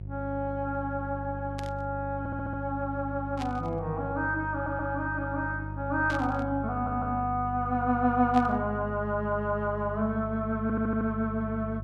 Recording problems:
electrical hum; 50 Hz, harmonics up to 400 Hz, SNR 8 dB
burst of static; 4 times, first at 1.5 s; peak -7 dB vs average level
stutter; 4 times, first at 2 s

